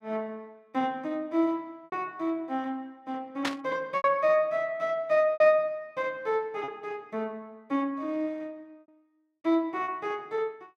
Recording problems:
lost packets; 3% of the sound replaced, filled with repeated pitch periods
burst of static; at 3.5 s; peak +3 dB vs average level

